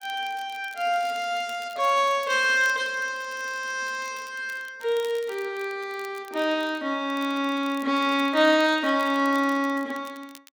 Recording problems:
crackling; vinyl, SNR 24 dB

